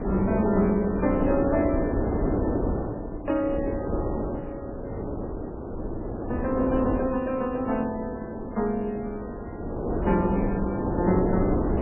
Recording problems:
codec artefacts; MP3, log-spectral distance 2 dB, nothing above 2.5 kHz
wind noise; below 470 Hz, SNR 2 dB

